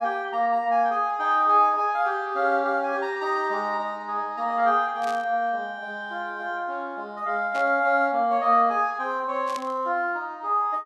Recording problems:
burst of static; at 5 s, at 7.5 s and at 9.5 s; peak -9 dB vs average level

